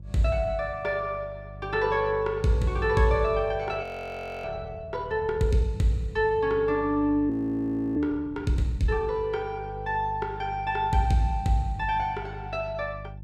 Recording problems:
hum; 50 Hz, harmonics up to 350 Hz, SNR 14 dB
audio freezing; at 4 s for 0.5 s and at 7.5 s for 0.5 s

